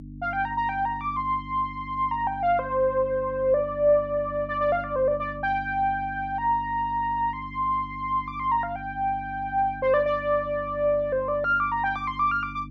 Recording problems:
hum; 50 Hz, harmonics up to 300 Hz, SNR 15 dB

